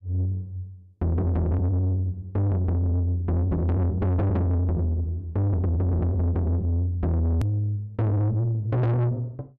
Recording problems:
distortion; soft clipping, signal-to-distortion ratio 6 dB
hard cut with a click; at 7.5 s

